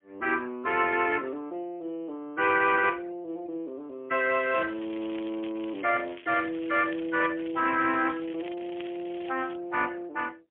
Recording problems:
phone line; 280 Hz to 3.3 kHz, AMR-NB, then MP3
crackling; from 4.5 to 9.5 s; loose cable, SNR 20 dB

